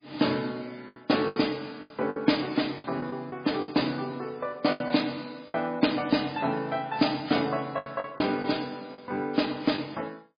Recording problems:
lossy compression; MP3, log-spectral distance 7 dB
lost packets; 8% of the sound replaced, filled with the last packet

